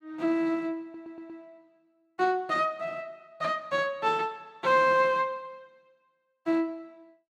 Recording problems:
stutter; at 1 s

